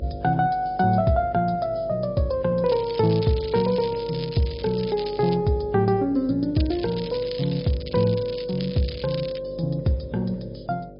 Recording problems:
low-pass filter; nothing above 5.2 kHz
lossy codec; MP3, log-spectral distance 6 dB
electrical hum; 50 Hz, harmonics up to 600 Hz, SNR 16 dB
crackling; from 2.5 to 5.5 s and from 6.5 to 9.5 s; loose cable, SNR 16 dB

